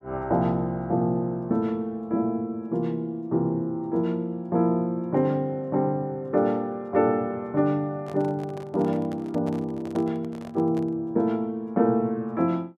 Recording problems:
handling noise; from 8 to 11 s; peak -9 dB vs average level

